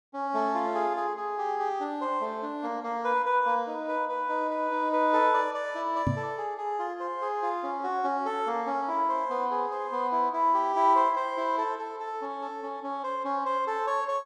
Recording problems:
microphone thump; at 6 s; peak +4 dB vs average level

